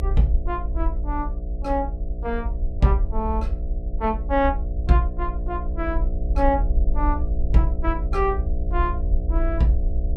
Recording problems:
electrical hum; 60 Hz, harmonics up to 720 Hz, SNR 8 dB
rumble; below 54 Hz, SNR 2 dB

